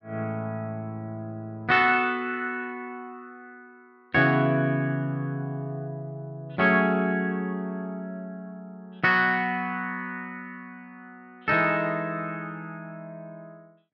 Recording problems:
none

